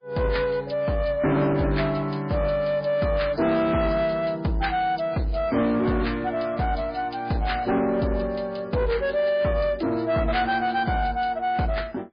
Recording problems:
lossy compression; MP3, log-spectral distance 3 dB, nothing above 4.1 kHz
distortion; soft clipping, signal-to-distortion ratio 11 dB

